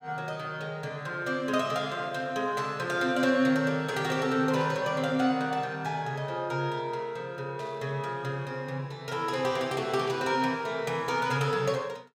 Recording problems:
burst of static; 4 times, first at 2.5 s; peak -14 dB vs average level

